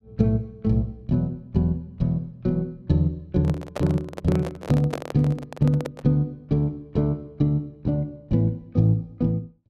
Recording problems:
handling noise; from 3.5 to 6 s; peak -1 dB vs average level

